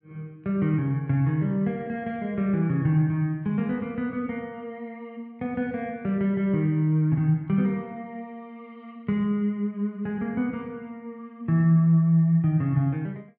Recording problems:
none

